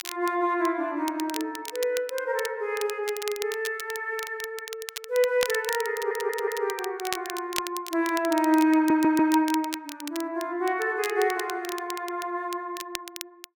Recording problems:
crackling; vinyl, SNR 11 dB
audio stuttering; at 6 s and at 9 s

